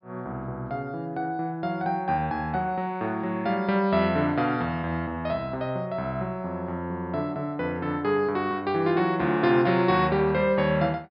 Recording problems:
low-pass filter; nothing above 5.2 kHz

